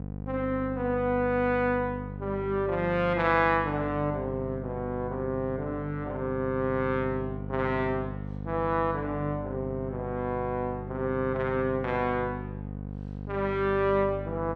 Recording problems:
hum; 50 Hz, harmonics up to 800 Hz, SNR 9 dB

